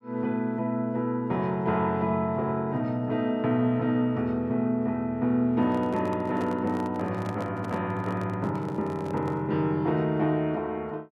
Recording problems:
microphone handling noise; from 5.5 to 9.5 s; peak -7 dB vs average level

